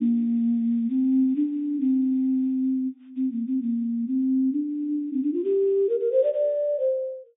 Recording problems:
low-pass filter; nothing above 3.7 kHz

